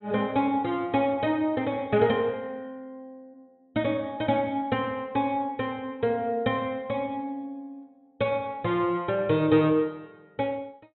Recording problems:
low-pass filter; nothing above 4 kHz

